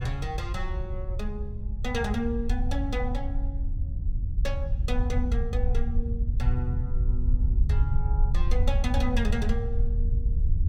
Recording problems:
low-frequency rumble; below 70 Hz, SNR -5 dB

